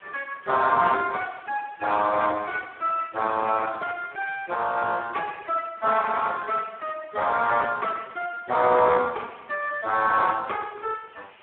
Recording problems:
phone line; 260 Hz to 3.9 kHz, Speex
hiss; SNR 27 dB

